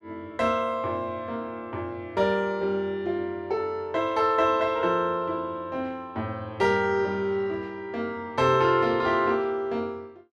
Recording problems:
none

